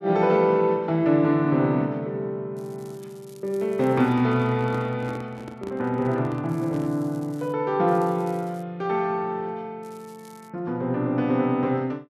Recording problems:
crackling; 4 times, first at 2.5 s; loose cable, SNR 30 dB
handling noise; from 4 to 7 s; peak -9 dB vs average level

